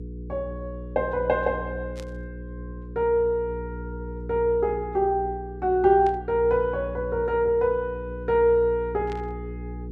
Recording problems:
electrical hum; 60 Hz, harmonics up to 480 Hz, SNR 12 dB
static burst; at 2 s, at 6 s and at 9 s; peak -14 dB vs average level

